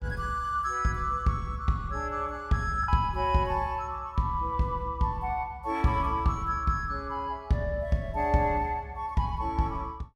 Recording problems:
lost packets; 0.4% of the sound replaced, filled with the last packet

